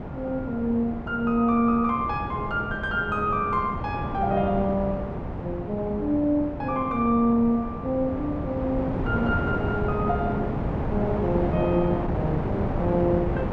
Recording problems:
wind on the microphone; below 530 Hz, SNR 5 dB

